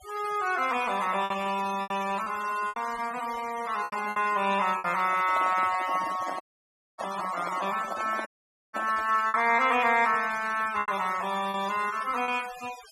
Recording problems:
noise reduction artefacts; signal-to-artefact ratio 15 dB
packet loss; 6% of the sound replaced, filled with repeated pitch periods
microphone handling noise; from 5 to 9 s; peak -4 dB vs average level
dropout; at 6.5 s for 0.5 s and at 8.5 s

